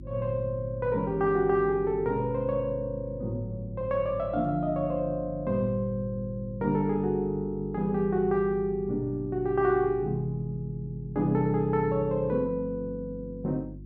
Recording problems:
electrical hum; 50 Hz, harmonics up to 350 Hz, SNR 15 dB

